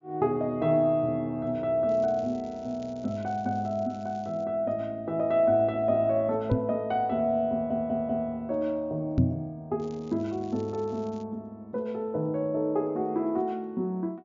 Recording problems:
treble missing; nothing above 7.2 kHz
crackle; from 2 to 4.5 s and from 10 to 11 s; loose cable, SNR 29 dB
knock on the microphone; at 6.5 s and at 9 s; peak +9 dB vs average level
stutter; at 7.5 s

